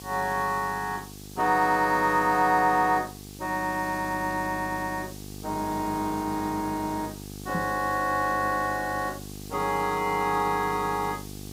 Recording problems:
hum; 50 Hz, harmonics up to 1.2 kHz, SNR 15 dB
hiss; SNR 18 dB
knock on the microphone; at 7.5 s; peak -1 dB vs average level

